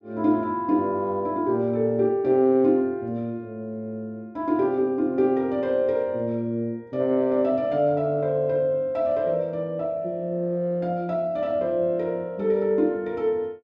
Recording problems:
none

